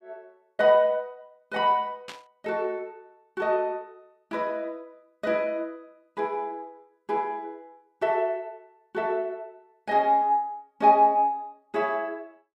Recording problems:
static burst; at 2 s; peak -9 dB vs average level

